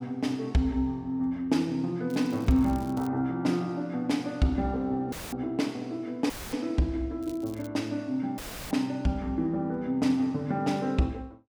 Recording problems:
crackling; at 2 s and at 7 s; loose cable, SNR 24 dB
audio cutting out; at 5 s, at 6.5 s and at 8.5 s; filled with static

